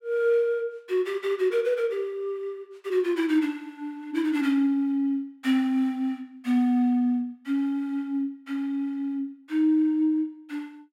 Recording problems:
none

